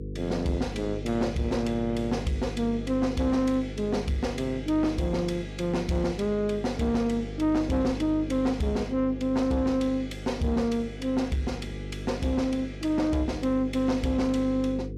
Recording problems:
distortion; soft clipping, signal-to-distortion ratio 12 dB
hum; 50 Hz, harmonics up to 500 Hz, SNR 10 dB

